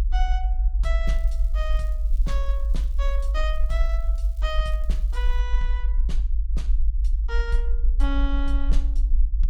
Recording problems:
rumble; below 52 Hz, SNR -10 dB
crackling; from 1 to 5.5 s; loose cable, SNR 23 dB

